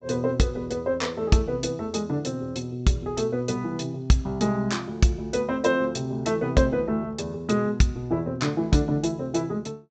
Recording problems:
treble missing; nothing above 8 kHz

